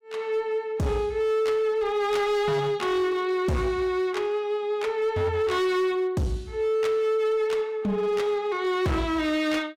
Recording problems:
distortion; hard clipping, signal-to-distortion ratio 11 dB

